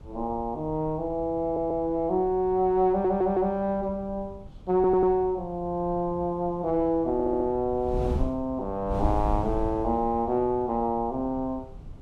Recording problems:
wind noise; below 110 Hz, SNR 13 dB
stutter; 4 times, first at 1.5 s

